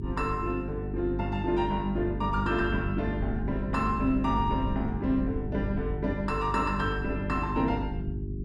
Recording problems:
hum; 50 Hz, harmonics up to 400 Hz, SNR 5 dB
wind on the microphone; below 130 Hz, SNR 10 dB

